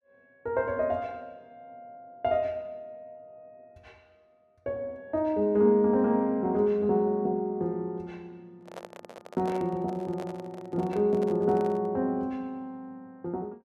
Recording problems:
handling noise; from 8.5 to 12 s; peak -8 dB vs average level

